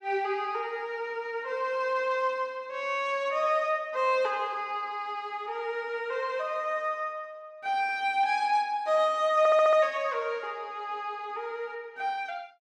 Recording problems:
stutter; at 9.5 s

